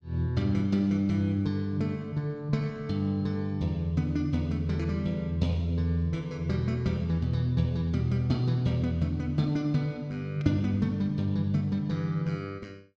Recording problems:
none

